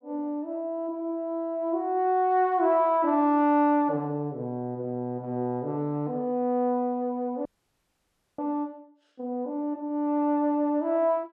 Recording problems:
frozen audio; at 7.5 s for 1 s

